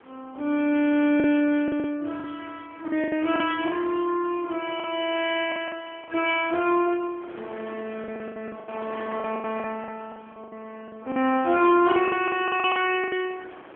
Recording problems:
telephone audio; 240 Hz to 3.2 kHz, AMR-NB
wind noise; below 1.6 kHz, SNR 22 dB
lost packets; 12% of the sound replaced, filled with the last packet

